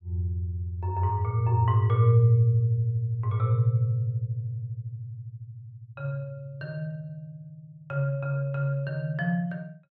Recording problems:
none

